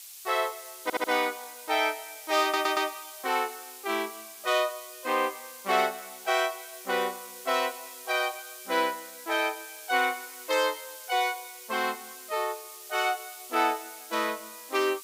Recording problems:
hiss; SNR 13 dB
audio stuttering; at 1 s and at 2.5 s

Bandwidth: 15.5 kHz